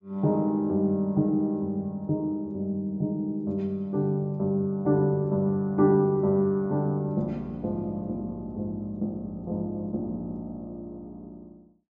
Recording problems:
low-pass filter; nothing above 8 kHz

